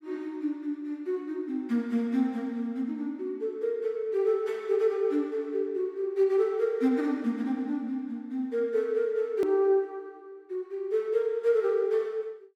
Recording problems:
edit click; at 9.5 s

